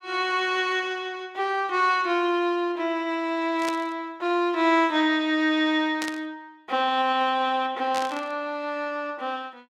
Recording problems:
static burst; at 3.5 s, at 6 s and at 8 s; peak -3 dB vs average level

